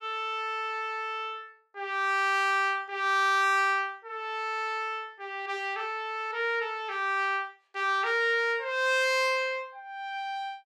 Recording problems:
none

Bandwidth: 15.5 kHz